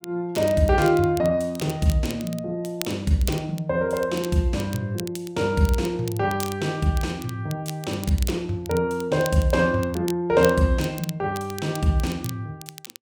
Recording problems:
crackling; vinyl, SNR 16 dB

